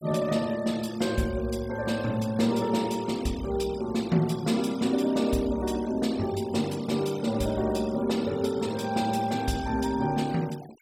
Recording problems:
denoising artefacts; signal-to-artefact ratio 18 dB

